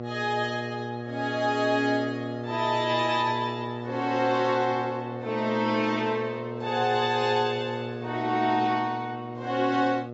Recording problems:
lossy codec; AAC, log-spectral distance 2 dB, nothing above 7.6 kHz
hum; 60 Hz, harmonics up to 1.3 kHz, SNR 8 dB

